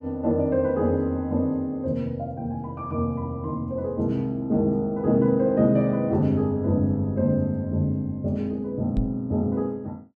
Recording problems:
knock on the microphone; at 9 s; peak +2 dB vs average level

